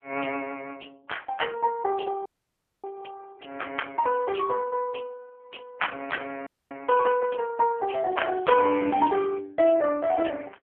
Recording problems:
telephone audio; 170 Hz to 3.3 kHz, AMR-NB
audio freezing; at 2.5 s for 0.5 s and at 6.5 s
crackling; from 8 to 9 s; loose cable, SNR 27 dB

